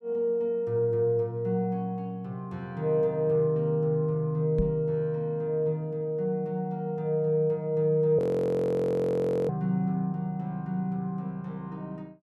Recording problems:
knock on the microphone; at 4.5 s; peak +2 dB vs average level
audio freezing; at 8 s for 1.5 s

